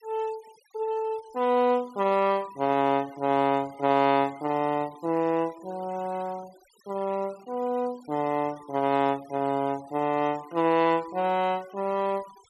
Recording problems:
noise reduction artefacts; signal-to-artefact ratio 23 dB

